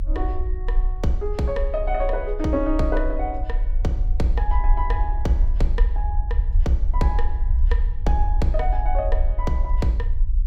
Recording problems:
rumble; below 52 Hz, strongest tone 32 Hz, SNR -2 dB

